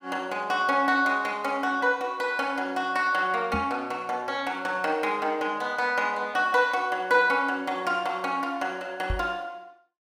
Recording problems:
knock on the microphone; at 3.5 s and at 9 s; peak -1 dB vs average level

